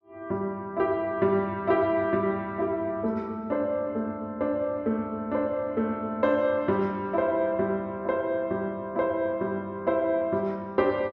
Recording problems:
none

